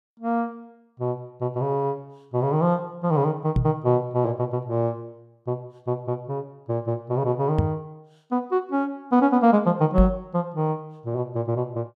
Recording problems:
microphone bump; at 3.5 s, at 7.5 s and at 10 s; peak +7 dB vs average level

